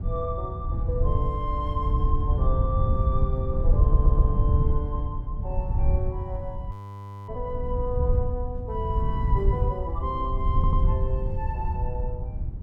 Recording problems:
wind on the microphone; below 88 Hz, SNR -6 dB
audio stuttering; at 4 s and at 11 s
frozen audio; at 6.5 s for 0.5 s

